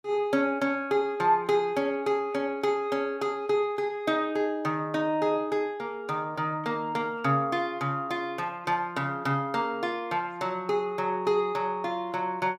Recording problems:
none

